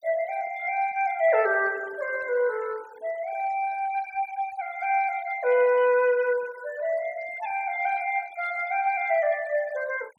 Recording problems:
denoising artefacts; signal-to-artefact ratio 21 dB

